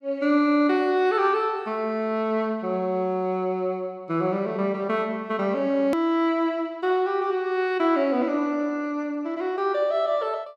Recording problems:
hard cut with a click; at 6 s

